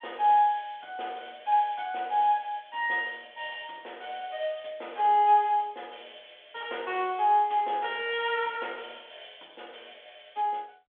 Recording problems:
phone line; 320 Hz to 3.6 kHz, G.726

